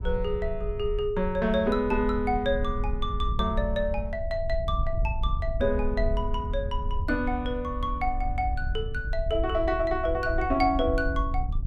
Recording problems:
wind on the microphone; below 68 Hz, SNR 5 dB

